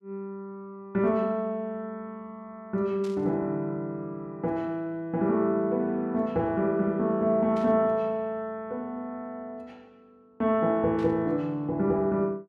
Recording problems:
burst of static; at 3 s, at 7.5 s and at 11 s; peak -15 dB vs average level

